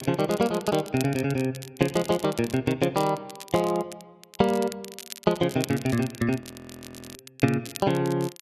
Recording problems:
crackle; vinyl, SNR 15 dB
audio freezing; at 6.5 s for 0.5 s

